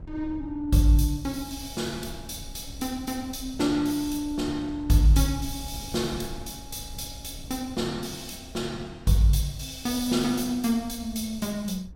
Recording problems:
wind on the microphone; below 100 Hz, SNR 17 dB

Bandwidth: 16 kHz